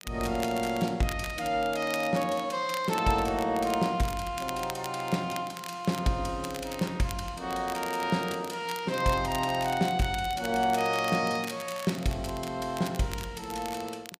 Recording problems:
crackle; vinyl, SNR 14 dB

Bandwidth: 15 kHz